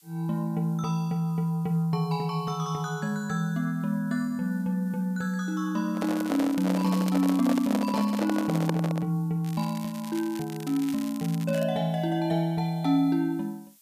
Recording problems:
background hiss; slope +5 dB per octave, SNR 30 dB
handling noise; from 6 to 9 s; peak +2 dB vs average level
crackle; from 6 to 8.5 s and from 9.5 to 12 s; loose cable, SNR 17 dB

